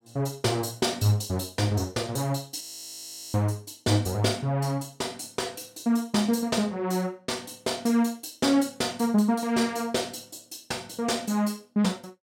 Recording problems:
audio freezing; at 2.5 s for 0.5 s

